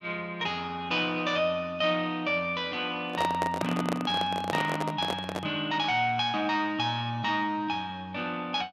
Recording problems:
handling noise; from 3 to 5.5 s; peak +2 dB vs average level

